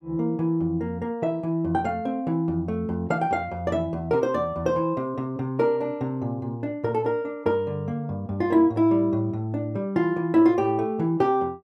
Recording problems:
none

